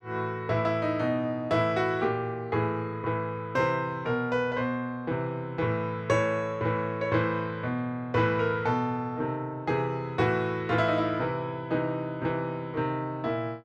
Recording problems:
none

